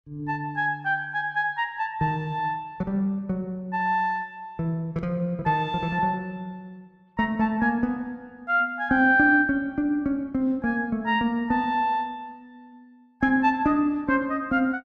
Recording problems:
none

